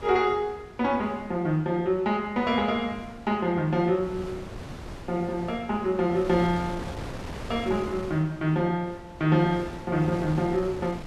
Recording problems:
wind noise; below 730 Hz, SNR 14 dB

